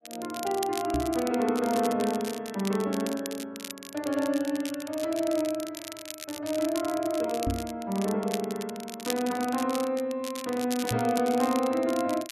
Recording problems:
crackle; vinyl, SNR 11 dB
knock on the microphone; at 1 s, at 7.5 s and at 11 s; peak +2 dB vs average level

